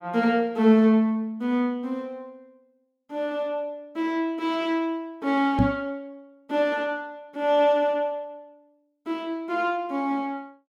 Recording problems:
knock on the microphone; at 5.5 s; peak +7 dB vs average level

